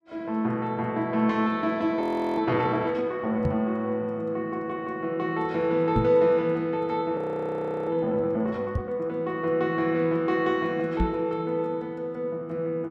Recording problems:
audio freezing; at 2 s and at 7 s for 0.5 s
microphone thump; 4 times, first at 3.5 s; peak +4 dB vs average level

